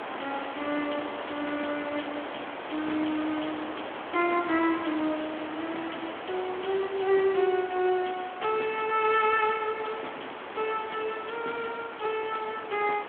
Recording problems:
telephone audio; 260 Hz to 3.4 kHz, Speex
background hiss; SNR 8 dB

